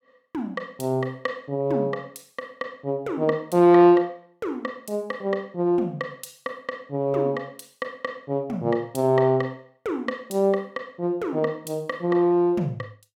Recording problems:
none

